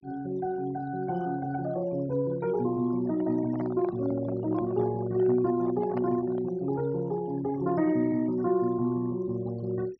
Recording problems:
treble cut off; nothing above 6.1 kHz
noise reduction artefacts; signal-to-artefact ratio 21 dB
microphone handling noise; from 3 to 6.5 s; peak -6 dB vs average level

